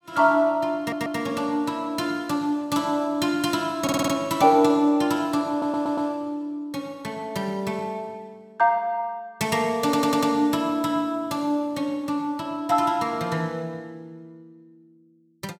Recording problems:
stutter; 4 times, first at 1 s

